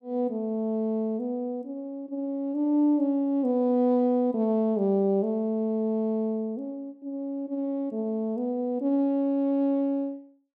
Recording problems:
none

